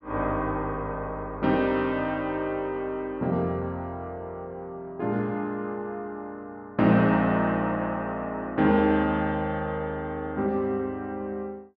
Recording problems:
none

